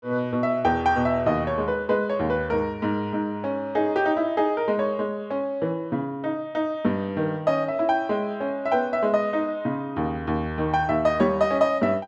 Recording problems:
none

